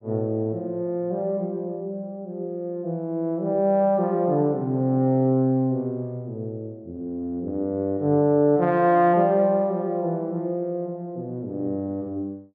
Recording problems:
none

